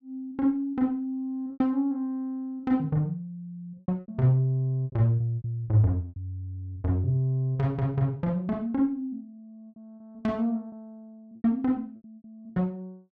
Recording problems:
lost packets; 8% of the sound replaced, filled with repeated pitch periods

